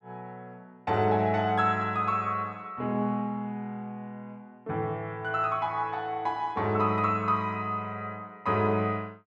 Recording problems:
none

